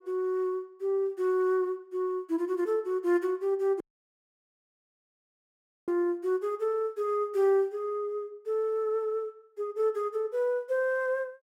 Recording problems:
audio cutting out; at 4 s for 2 s

